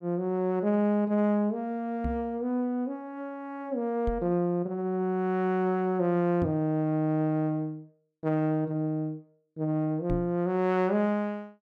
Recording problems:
knock on the microphone; 4 times, first at 2 s; peak -1 dB vs average level

